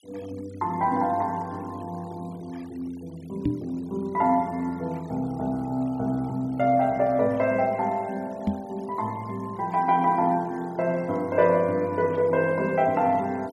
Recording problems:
noise reduction artefacts; signal-to-artefact ratio 27 dB
microphone thump; at 3.5 s and at 8.5 s; peak +4 dB vs average level

